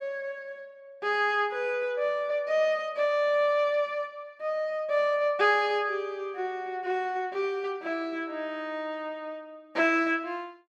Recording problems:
none

